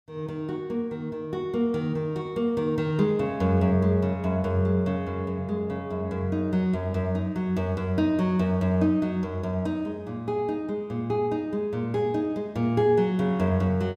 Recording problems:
none

